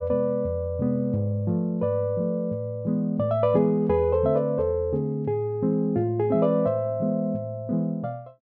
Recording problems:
none

